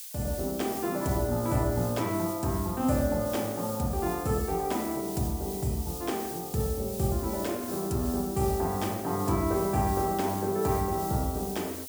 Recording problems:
background hiss; SNR 9 dB

